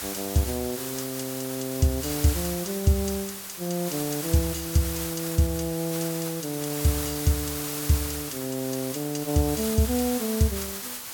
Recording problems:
background hiss; slope 0 dB per octave, SNR 5 dB

